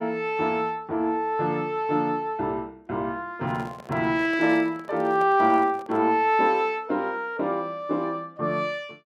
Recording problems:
handling noise; from 3.5 to 6 s; peak -11 dB vs average level

